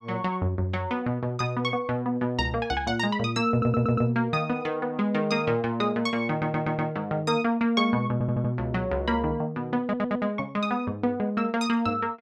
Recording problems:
stutter; 4 times, first at 3.5 s

